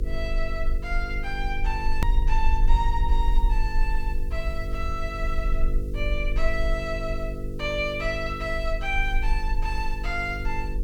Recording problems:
mains hum; 50 Hz, harmonics up to 500 Hz, SNR 6 dB
background hiss; slope +5 dB per octave, SNR 27 dB
low-frequency rumble; below 44 Hz, strongest tone 22 Hz, SNR -1 dB
hard cut with a click; at 2 s

